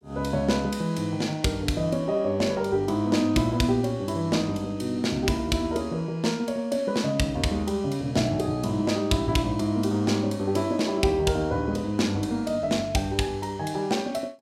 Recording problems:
none

